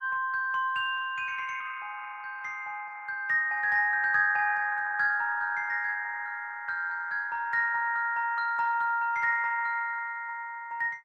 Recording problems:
lossy codec; Opus, log-spectral distance 3 dB

